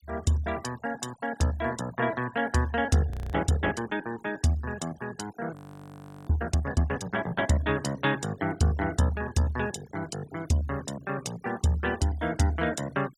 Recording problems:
noise reduction artefacts; signal-to-artefact ratio 19 dB
frozen audio; at 3 s and at 5.5 s for 0.5 s

